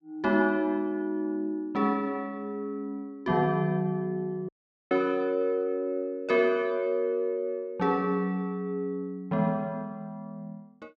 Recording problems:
audio cutting out; at 4.5 s

